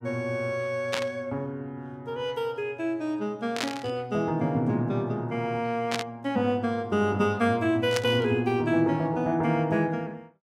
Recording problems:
static burst; 4 times, first at 1 s; peak +2 dB vs average level

